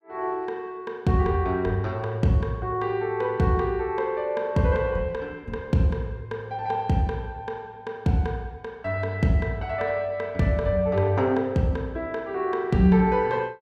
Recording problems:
none

